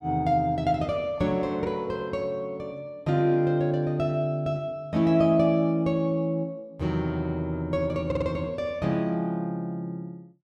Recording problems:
stutter; at 8 s

